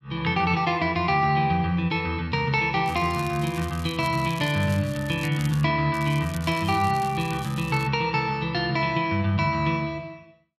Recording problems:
crackle; from 3 to 5.5 s and from 6 to 8 s; loose cable, SNR 19 dB

